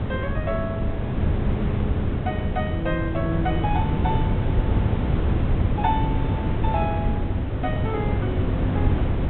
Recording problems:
low-pass filter; nothing above 3.9 kHz
wind noise; below 220 Hz, SNR -6 dB

